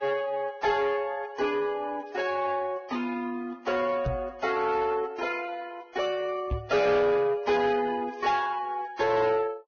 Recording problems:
lossy codec; Vorbis, log-spectral distance 3 dB, nothing above 6.3 kHz
distorted audio; soft clipping, signal-to-distortion ratio 11 dB
knock on the microphone; at 4 s and at 6.5 s; peak +1 dB vs average level

